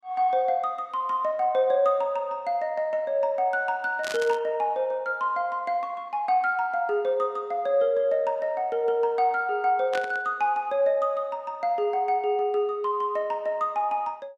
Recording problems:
burst of static; at 4 s and at 10 s; peak -4 dB vs average level

